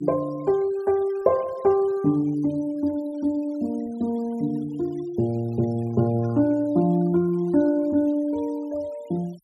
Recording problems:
denoising artefacts; signal-to-artefact ratio 27 dB

